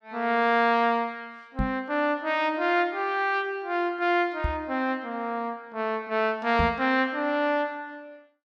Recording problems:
microphone bump; at 1.5 s, at 4.5 s and at 6.5 s; peak +1 dB vs average level

